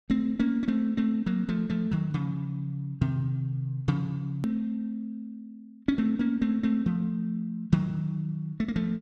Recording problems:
hard cut with a click; at 4.5 s

